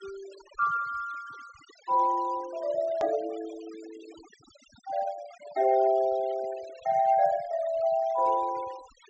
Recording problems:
low-pass filter; nothing above 8 kHz
denoising artefacts; signal-to-artefact ratio 22 dB
hard cut with a click; at 3 s

